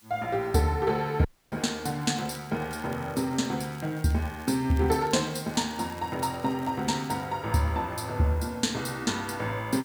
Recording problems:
background hiss; slope +1 dB per octave, SNR 27 dB
audio cutting out; at 1.5 s
crackle; from 2 to 7.5 s; loose cable, SNR 23 dB

